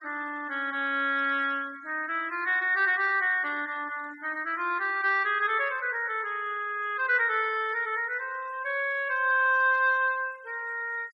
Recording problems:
denoising artefacts; signal-to-artefact ratio 26 dB

